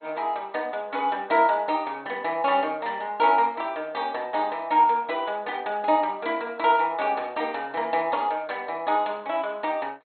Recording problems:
lossy codec; MP2, log-spectral distance 2 dB, nothing above 4.2 kHz

